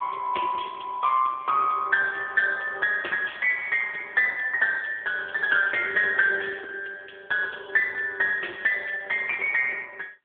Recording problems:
telephone audio; 300 Hz to 3.3 kHz, AMR-NB

